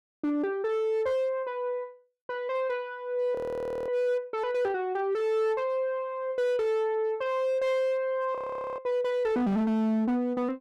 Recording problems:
distorted audio; hard clipping, signal-to-distortion ratio 11 dB
frozen audio; at 3.5 s for 0.5 s and at 8.5 s

